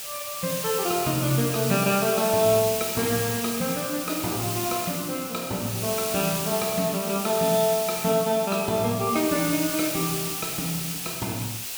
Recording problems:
background hiss; SNR 3 dB

